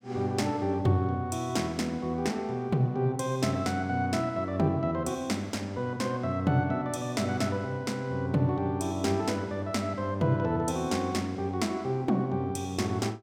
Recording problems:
none

